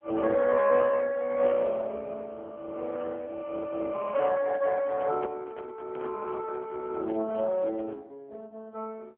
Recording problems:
telephone audio; 220 Hz to 3.9 kHz, AMR-NB
handling noise; from 4.5 to 8 s; peak -9 dB vs average level

